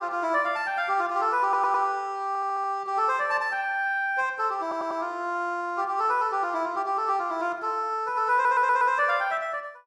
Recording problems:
stutter; 4 times, first at 1.5 s

